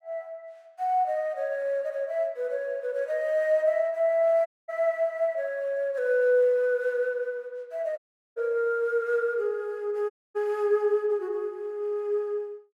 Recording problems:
audio cutting out; at 4.5 s, at 8 s and at 10 s

